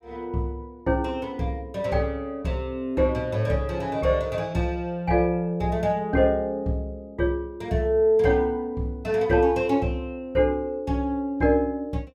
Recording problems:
none

